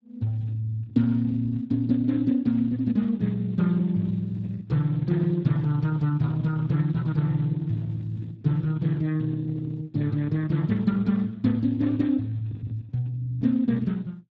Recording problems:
lossy codec; Speex, log-spectral distance 2 dB, nothing above 13.1 kHz

